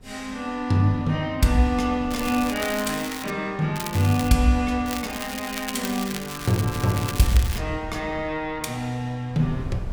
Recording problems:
wind noise; below 120 Hz, SNR 18 dB
crackle; from 2 to 3.5 s, at 4 s and from 5 to 7.5 s; loose cable, SNR 10 dB

